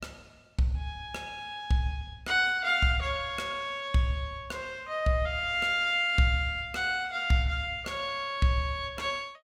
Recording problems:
none

